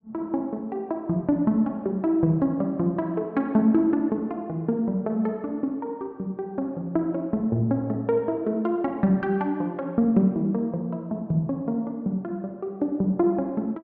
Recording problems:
none

